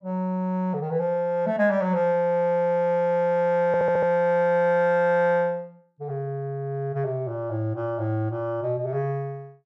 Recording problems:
audio stuttering; at 3.5 s

